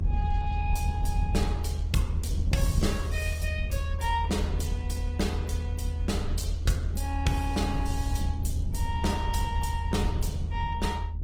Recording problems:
lossy codec; Opus, log-spectral distance 3 dB
low-frequency rumble; below 80 Hz, SNR -2 dB

